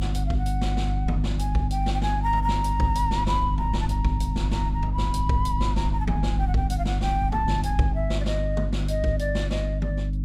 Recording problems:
hum; 50 Hz, harmonics up to 300 Hz, SNR -1 dB
wind on the microphone; below 100 Hz, SNR 9 dB

